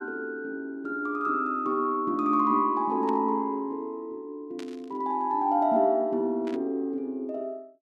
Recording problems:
burst of static; at 3 s, at 4.5 s and at 6.5 s; peak -13 dB vs average level

